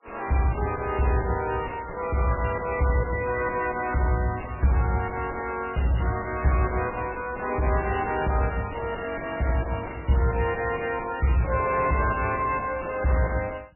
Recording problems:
codec artefacts; MP3, log-spectral distance 7 dB, nothing above 2.4 kHz
distorted audio; soft clipping, signal-to-distortion ratio 4 dB

